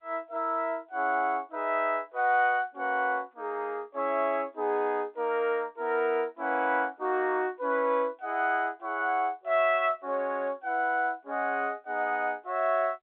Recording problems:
phone line; 240 Hz to 3.9 kHz, G.711

